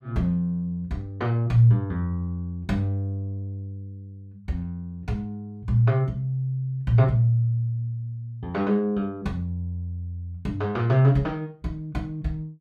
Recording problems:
none

